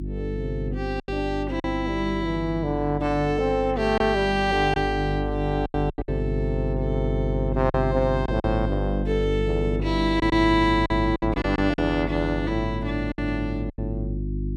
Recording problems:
hum; 50 Hz, harmonics up to 350 Hz, SNR 5 dB
lost packets; 6% of the sound replaced, filled with silence

